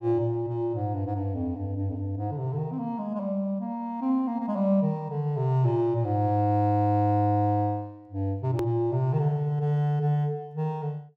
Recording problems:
click at an edit; at 8.5 s

